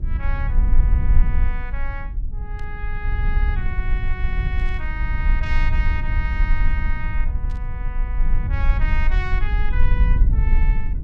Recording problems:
rumble; below 54 Hz, strongest tone 22 Hz, SNR -10 dB
burst of static; at 2.5 s, at 4.5 s and at 7.5 s; peak -11 dB vs average level

